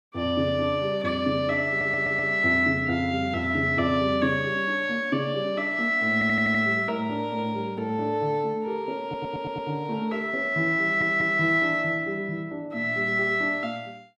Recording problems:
stutter; 4 times, first at 1.5 s

